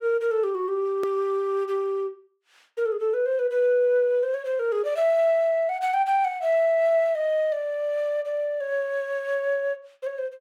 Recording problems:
edit click; at 1 s

